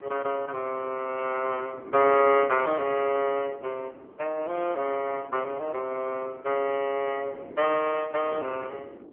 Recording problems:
phone line; 320 Hz to 3.2 kHz, AMR-NB
wind noise; below 450 Hz, SNR 18 dB

